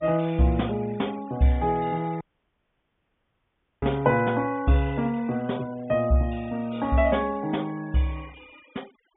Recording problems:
low-pass filter; nothing above 3.6 kHz
noise reduction artefacts; signal-to-artefact ratio 25 dB
audio cutting out; at 2 s for 1.5 s

